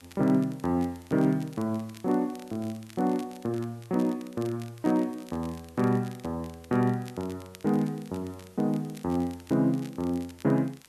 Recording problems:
background hiss; slope -2 dB per octave, SNR 29 dB
crackle; vinyl, SNR 23 dB

